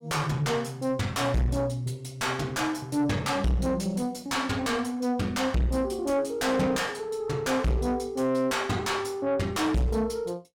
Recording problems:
distorted audio; soft clipping, signal-to-distortion ratio 6 dB

